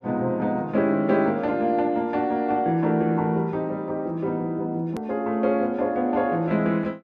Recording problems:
click at an edit; at 5 s

